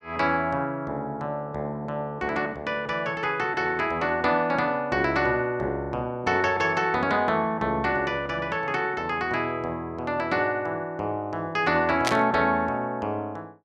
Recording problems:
burst of static; at 12 s; peak +4 dB vs average level

